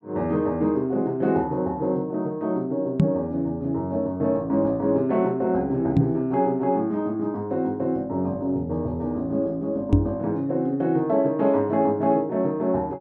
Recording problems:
knock on the microphone; at 3 s, at 6 s and at 10 s; peak +9 dB vs average level

